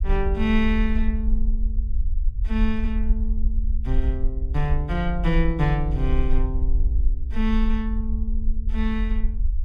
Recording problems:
rumble; below 52 Hz, SNR -1 dB

